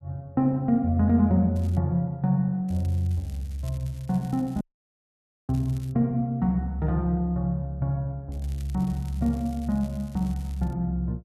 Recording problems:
crackling; at 1.5 s, from 2.5 to 6 s and from 8.5 to 11 s; loose cable, SNR 27 dB
dropout; at 4.5 s for 1 s

